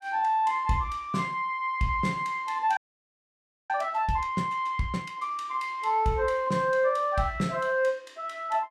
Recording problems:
frozen audio; at 3 s for 1 s

